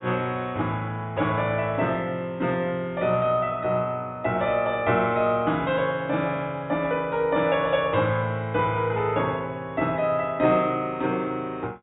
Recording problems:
treble cut off; nothing above 4 kHz

